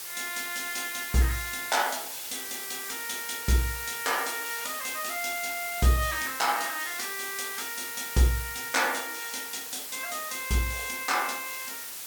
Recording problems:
background hiss; slope +1 dB per octave, SNR 5 dB

